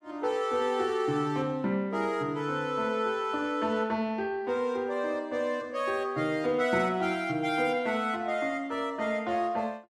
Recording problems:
none

